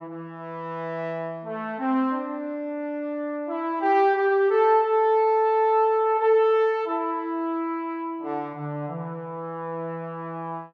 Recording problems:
none

